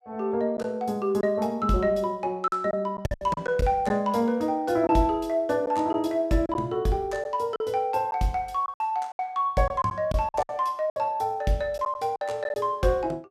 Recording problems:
lost packets; 7% of the sound replaced, filled with silence

